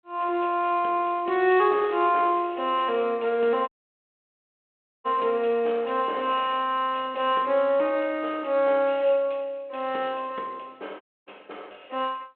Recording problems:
telephone audio; 280 Hz to 3.5 kHz, G.726
dropout; at 3.5 s for 1.5 s and at 11 s

